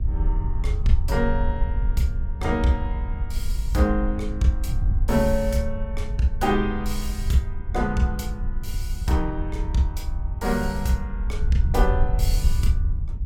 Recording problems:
wind on the microphone; below 68 Hz, SNR 2 dB

